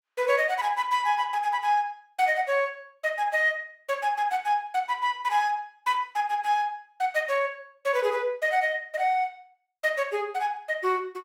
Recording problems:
none

